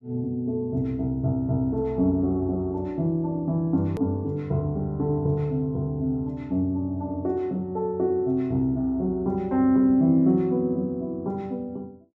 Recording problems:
click at an edit; at 4 s

